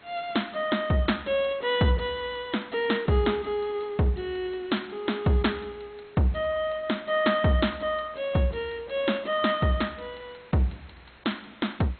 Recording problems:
lossy codec; MP2, log-spectral distance 6 dB, nothing above 4 kHz
hiss; SNR 25 dB

